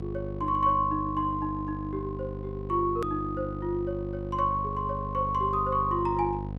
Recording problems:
hum; 50 Hz, harmonics up to 800 Hz, SNR 8 dB
hard cut with a click; at 3 s

